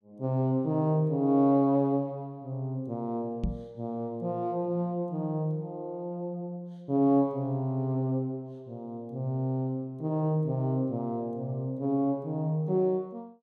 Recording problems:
microphone thump; at 3.5 s; peak +2 dB vs average level

